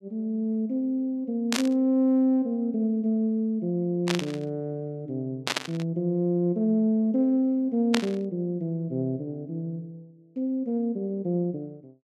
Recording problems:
burst of static; 4 times, first at 1.5 s; peak +5 dB vs average level

